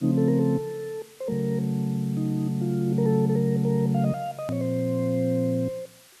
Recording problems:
hiss; slope +1 dB per octave, SNR 25 dB
edit click; at 4.5 s

